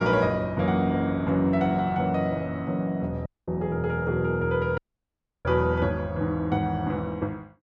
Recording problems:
audio cutting out; at 3.5 s and at 5 s for 0.5 s

